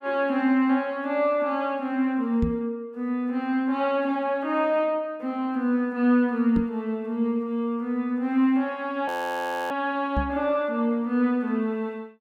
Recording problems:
microphone thump; at 2.5 s, at 6.5 s and at 10 s; peak +2 dB vs average level
frozen audio; at 9 s for 0.5 s

